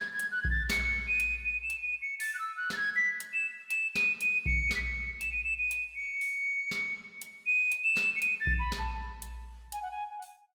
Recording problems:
lossy codec; Opus, log-spectral distance 2 dB, nothing above 19 kHz

